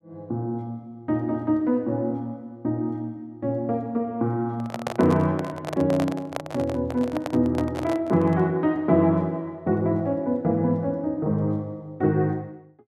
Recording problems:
handling noise; from 4.5 to 8.5 s; peak 0 dB vs average level

